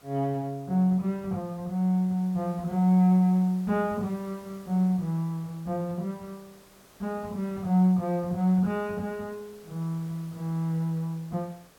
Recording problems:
hiss; slope -4 dB per octave, SNR 27 dB

